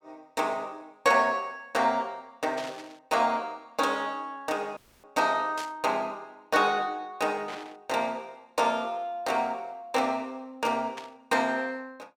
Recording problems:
burst of static; 4 times, first at 2.5 s; peak -6 dB vs average level
dropout; at 5 s

